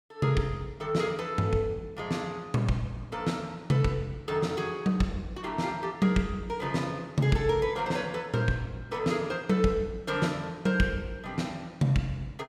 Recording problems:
none

